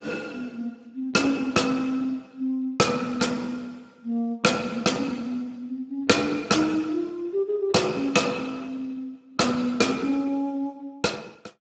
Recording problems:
codec artefacts; Speex, log-spectral distance 3 dB, nothing above 7.6 kHz

